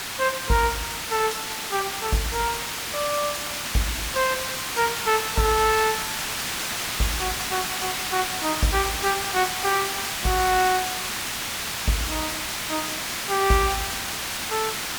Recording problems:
hiss; SNR 1 dB

